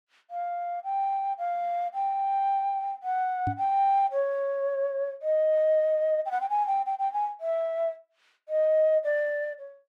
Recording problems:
knock on the microphone; at 3.5 s; peak -1 dB vs average level

